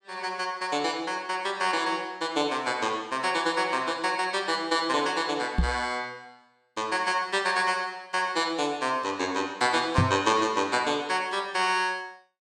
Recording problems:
knock on the microphone; at 5.5 s and at 10 s; peak +8 dB vs average level

